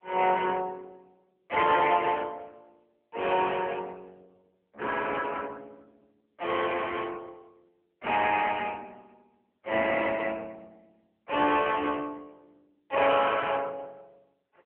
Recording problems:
phone line; 320 Hz to 3.3 kHz, AMR-NB

